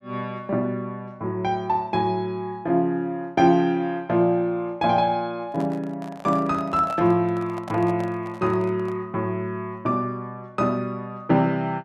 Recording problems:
microphone handling noise; from 5.5 to 9 s; peak -8 dB vs average level

